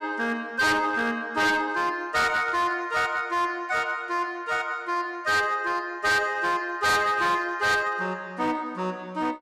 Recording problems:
distortion; hard clipping, uneven, signal-to-distortion ratio 7 dB

